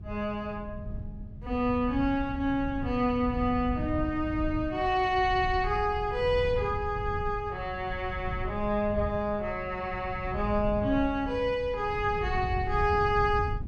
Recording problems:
wind on the microphone; below 110 Hz, SNR 9 dB

